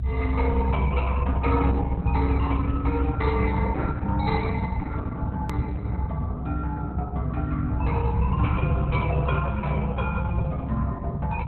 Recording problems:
lossy compression; Opus, log-spectral distance 3 dB, nothing above 4 kHz
low-frequency rumble; below 110 Hz, strongest tone 66 Hz, SNR -5 dB
hard cut with a click; at 5.5 s

